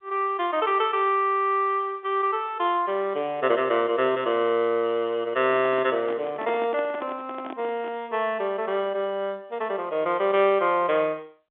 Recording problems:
phone line; 190 Hz to 3.7 kHz, G.711
microphone handling noise; from 5.5 to 8 s; peak -7 dB vs average level

